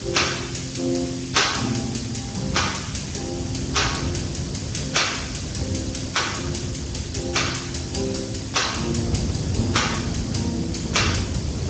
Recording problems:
codec artefacts; Speex, log-spectral distance 10 dB, nothing above 7.3 kHz
hiss; slope +3 dB per octave, SNR 11 dB
low-frequency rumble; below 240 Hz, SNR 5 dB

